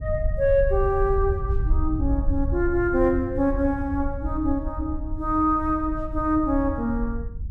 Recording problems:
rumble; below 74 Hz, SNR 5 dB

